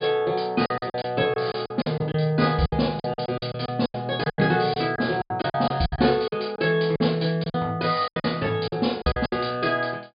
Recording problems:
treble cut off; nothing above 5 kHz
packet loss; 15% of the sound replaced, filled with silence

